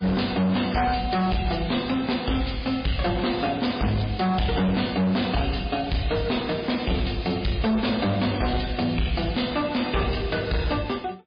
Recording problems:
lossy codec; MP3, log-spectral distance 8 dB, nothing above 4.8 kHz
distortion; hard clipping, signal-to-distortion ratio 7 dB

